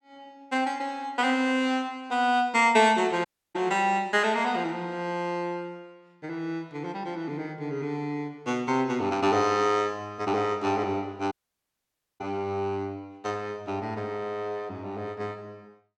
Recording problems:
audio cutting out; at 3.5 s and at 11 s for 1 s

